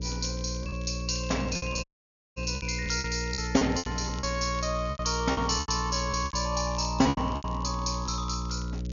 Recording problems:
treble missing; nothing above 7 kHz
hum; 60 Hz, harmonics up to 540 Hz, SNR 5 dB
crackle; vinyl, SNR 20 dB
packet loss; 12% of the sound replaced, filled with repeated pitch periods
dropout; at 2 s for 0.5 s

